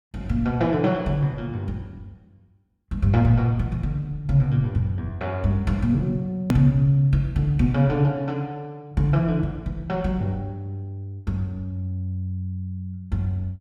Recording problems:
hard cut with a click; at 6.5 s

